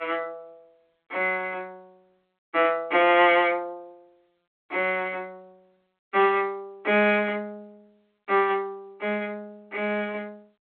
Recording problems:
phone line; 260 Hz to 3.5 kHz, G.726

